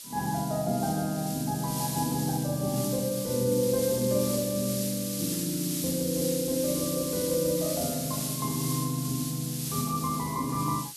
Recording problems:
background hiss; SNR 4 dB

